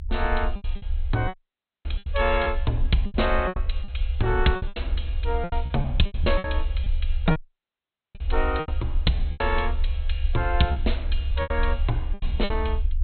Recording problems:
treble missing; nothing above 4.2 kHz
low-frequency rumble; below 68 Hz, strongest tone 26 Hz, SNR 2 dB
packet loss; 14% of the sound replaced, filled with repeated pitch periods
audio cutting out; at 1.5 s and at 7.5 s for 1 s

